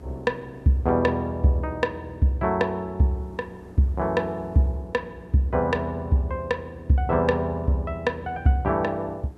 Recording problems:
hum; 60 Hz, harmonics up to 420 Hz, SNR 24 dB
background hiss; slope -9 dB per octave, SNR 28 dB

